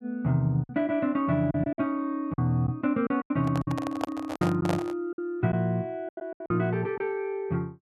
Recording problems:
lost packets; 9% of the sound replaced, filled with silence
microphone handling noise; from 3.5 to 5 s; peak +2 dB vs average level

